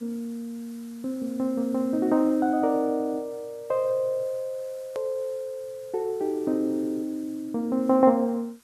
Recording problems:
hiss; SNR 27 dB
click at an edit; at 5 s

